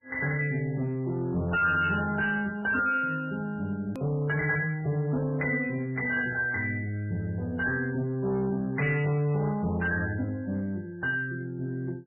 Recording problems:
lossy compression; MP3, then MP3, log-spectral distance 3 dB, nothing above 2.9 kHz
distorted audio; soft clipping, signal-to-distortion ratio 10 dB
hard cut with a click; at 4 s

